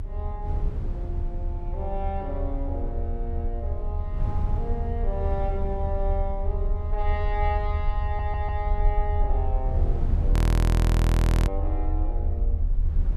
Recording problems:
electrical hum; 60 Hz, harmonics up to 720 Hz, SNR 19 dB
low-frequency rumble; below 74 Hz, strongest tone 30 Hz, SNR -5 dB
wind noise; below 120 Hz, SNR -1 dB
audio stuttering; at 8 s
frozen audio; at 10 s for 1 s

